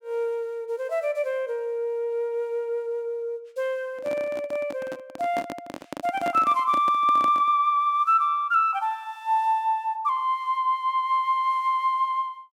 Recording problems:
handling noise; from 4 to 7.5 s; peak -4 dB vs average level

